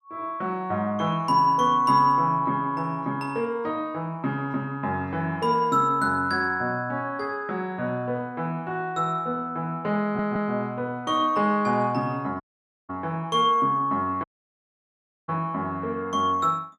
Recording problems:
audio stuttering; at 10 s
audio cutting out; at 12 s and at 14 s for 1 s

